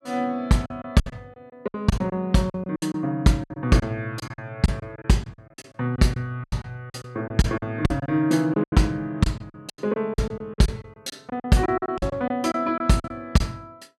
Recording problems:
lost packets; 15% of the sound replaced, filled with silence

